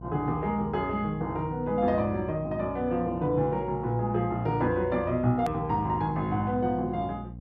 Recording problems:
hum; 60 Hz, harmonics up to 540 Hz, SNR 14 dB
click at an edit; at 5.5 s

